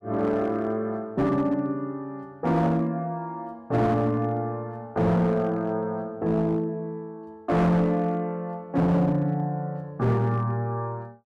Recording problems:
distorted audio; hard clipping, signal-to-distortion ratio 11 dB

